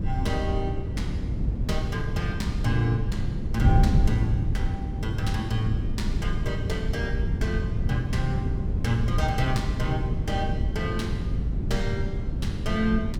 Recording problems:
wind noise; below 140 Hz, SNR -2 dB

